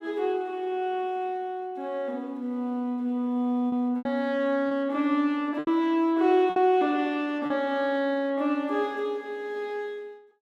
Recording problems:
lost packets; 3% of the sound replaced, filled with repeated pitch periods

